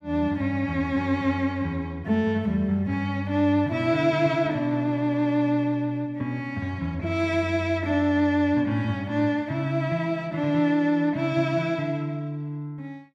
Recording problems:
none

